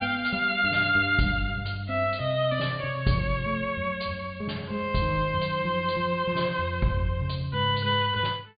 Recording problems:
treble missing; nothing above 4.7 kHz

